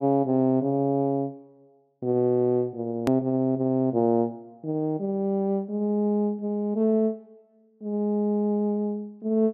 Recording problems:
treble cut off; nothing above 6.7 kHz
hard cut with a click; at 3 s

